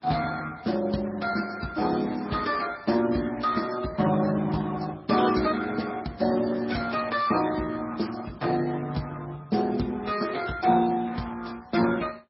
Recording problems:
lossy codec; Speex, then MP3, log-spectral distance 6 dB, nothing above 5.5 kHz

